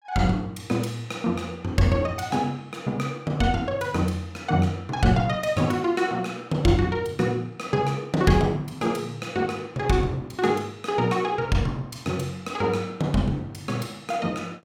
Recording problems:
none

